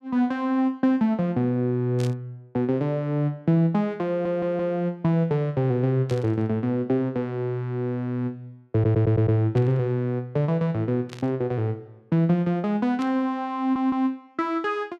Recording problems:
burst of static; 5 times, first at 2 s; peak -10 dB vs average level
stutter; at 4 s, at 8.5 s and at 14 s

